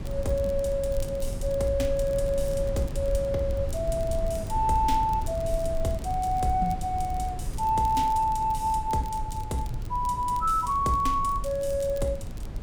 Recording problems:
wind noise; below 94 Hz, SNR 8 dB
crackling; vinyl, SNR 25 dB

